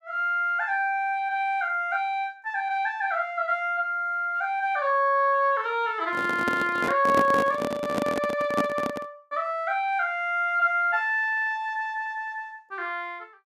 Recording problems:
microphone handling noise; from 6 to 9 s; peak +3 dB vs average level

